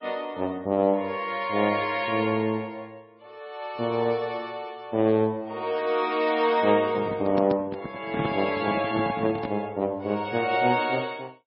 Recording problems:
lossy compression; MP3, log-spectral distance 2 dB, nothing above 4.5 kHz
handling noise; from 7 to 9.5 s; peak 0 dB vs average level

